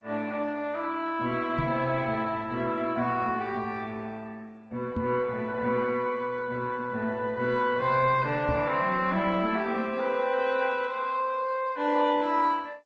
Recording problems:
lossy codec; G.722, then Opus, log-spectral distance 3 dB, nothing above 7.8 kHz
microphone thump; at 1.5 s, at 5 s and at 8.5 s; peak +1 dB vs average level

